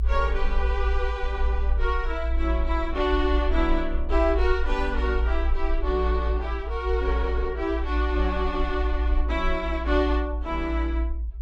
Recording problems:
low-frequency rumble; below 58 Hz, strongest tone 58 Hz, SNR 0 dB

